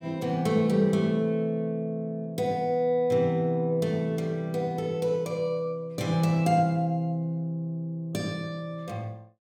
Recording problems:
none

